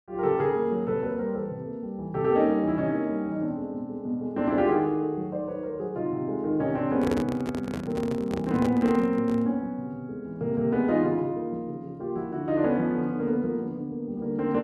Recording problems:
handling noise; from 7 to 9.5 s; peak 0 dB vs average level

